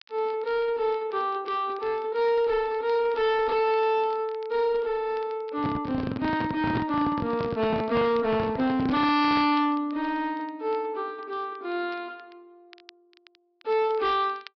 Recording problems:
treble cut off; nothing above 5.5 kHz
distorted audio; hard clipping, uneven, signal-to-distortion ratio 8 dB
crackle; vinyl, SNR 28 dB
microphone handling noise; from 5.5 to 9.5 s; peak +2 dB vs average level

